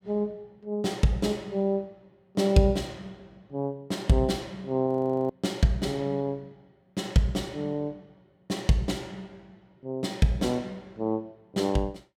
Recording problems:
frozen audio; at 5 s

